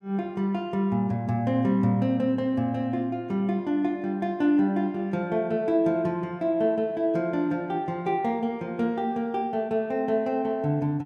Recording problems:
none

